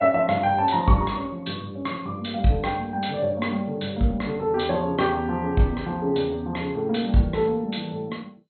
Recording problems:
lossy codec; MP2, log-spectral distance 3 dB, nothing above 4.2 kHz

